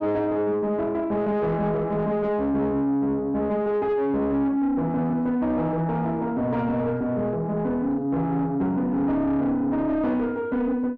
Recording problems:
distortion; soft clipping, signal-to-distortion ratio 10 dB

